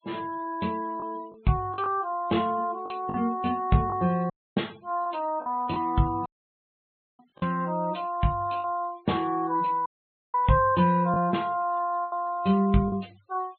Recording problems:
treble cut off; nothing above 4 kHz
denoising artefacts; signal-to-artefact ratio 26 dB
lost packets; 4% of the sound replaced, filled with the last packet
audio cutting out; at 4.5 s, at 6.5 s for 1 s and at 10 s

